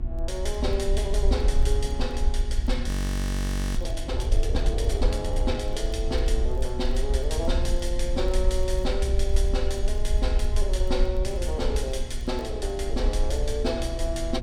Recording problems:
hum; 60 Hz, harmonics up to 1.1 kHz, SNR 12 dB
rumble; below 60 Hz, SNR -2 dB
wind on the microphone; below 190 Hz, SNR 14 dB
crackle; vinyl, SNR 30 dB
audio freezing; at 3 s for 1 s

